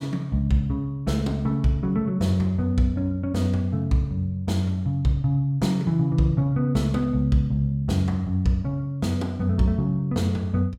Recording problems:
none

